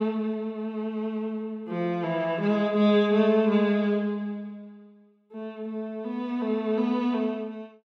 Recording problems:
none

